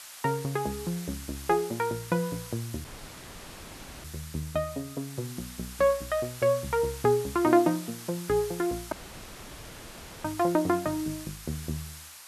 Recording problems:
hiss; SNR 13 dB
dropout; at 3 s for 1 s and at 9 s for 1.5 s

